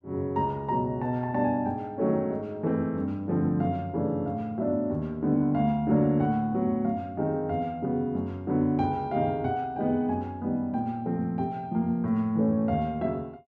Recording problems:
none

